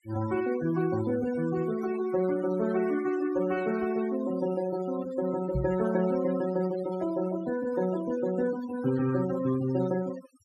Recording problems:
denoising artefacts; signal-to-artefact ratio 14 dB
microphone thump; at 5.5 s; peak +1 dB vs average level

